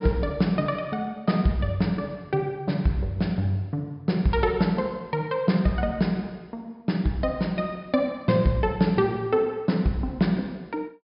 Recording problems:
treble missing; nothing above 5.5 kHz

